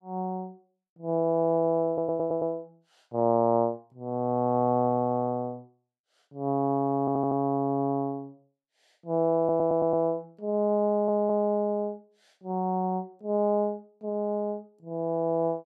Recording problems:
audio stuttering; 4 times, first at 2 s

